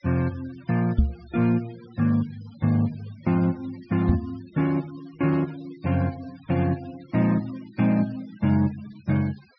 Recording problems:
treble cut off; nothing above 5.5 kHz
noise reduction artefacts; signal-to-artefact ratio 23 dB
knock on the microphone; at 1 s and at 4 s; peak +9 dB vs average level

